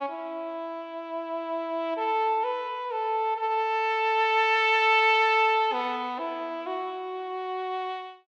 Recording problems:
none

